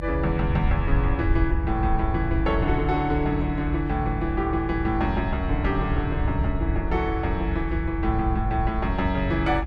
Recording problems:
rumble; below 82 Hz, SNR 2 dB

